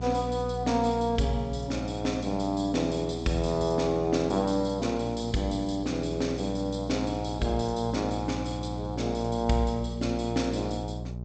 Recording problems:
lossy codec; G.722, log-spectral distance 4 dB, nothing above 8 kHz
hum; 60 Hz, harmonics up to 660 Hz, SNR 9 dB

